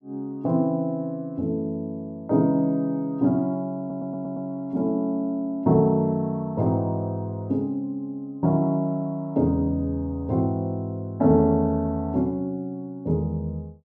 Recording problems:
audio stuttering; at 4 s

